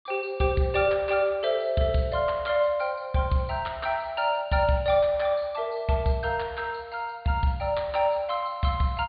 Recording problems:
low-pass filter; nothing above 4.5 kHz

